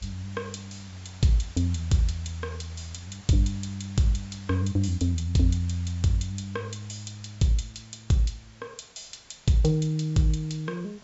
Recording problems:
treble cut off; nothing above 8 kHz
hiss; slope -1 dB per octave, SNR 23 dB

